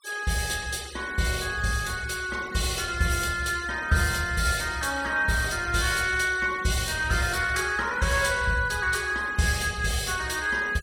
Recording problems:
denoising artefacts; signal-to-artefact ratio 18 dB

